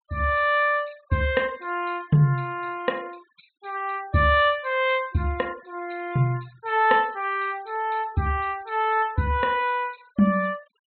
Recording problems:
treble missing; nothing above 4 kHz
noise reduction artefacts; signal-to-artefact ratio 27 dB

